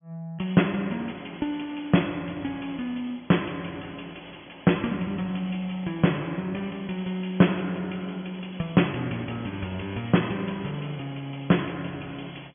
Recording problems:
treble missing; nothing above 3.4 kHz

